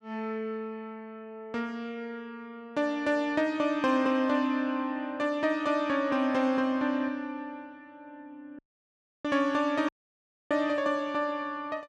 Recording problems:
audio cutting out; at 8.5 s for 0.5 s and at 10 s for 0.5 s

